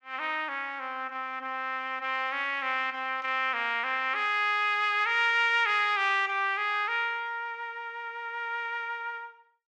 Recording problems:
none

